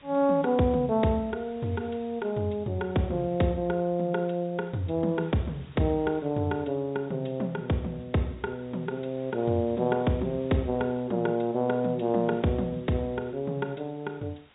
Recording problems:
treble cut off; nothing above 4 kHz
background hiss; SNR 27 dB

